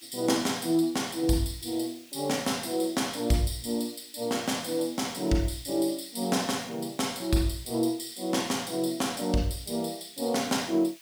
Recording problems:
background hiss; SNR 22 dB

